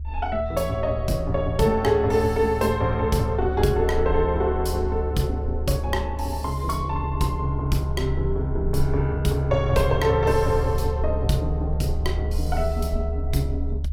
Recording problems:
low-frequency rumble; below 72 Hz, strongest tone 70 Hz, SNR 5 dB

